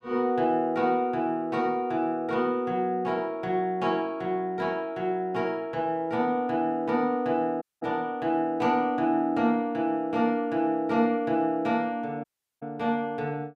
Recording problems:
audio cutting out; at 7.5 s and at 12 s

